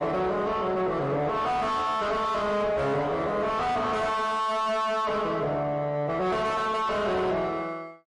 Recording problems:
lossy compression; MP3, log-spectral distance 2 dB, nothing above 10.4 kHz
distorted audio; soft clipping, signal-to-distortion ratio 5 dB

